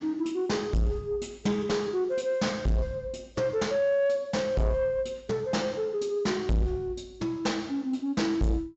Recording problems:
treble cut off; nothing above 7.6 kHz
distortion; soft clipping, signal-to-distortion ratio 6 dB

